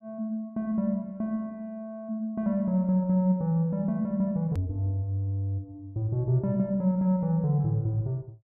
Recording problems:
edit click; at 4.5 s

